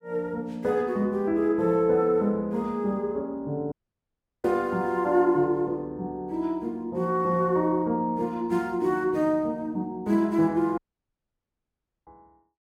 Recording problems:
dropout; at 3.5 s for 0.5 s and at 11 s for 1.5 s

